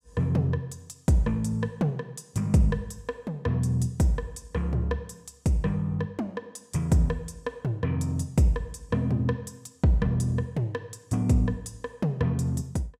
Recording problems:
none

